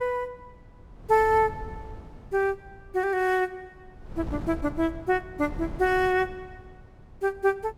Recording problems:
wind on the microphone; below 200 Hz, SNR 16 dB

